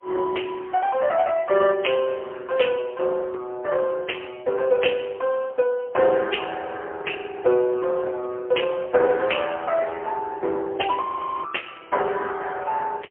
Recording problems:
telephone audio; 320 Hz to 3.2 kHz, AMR-NB, then MP3
frozen audio; at 11 s

